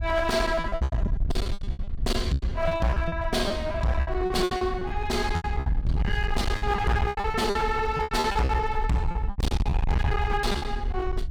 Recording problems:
distorted audio; hard clipping, signal-to-distortion ratio 7 dB
wind on the microphone; below 82 Hz, SNR 5 dB
lost packets; 19% of the sound replaced, filled with repeated pitch periods

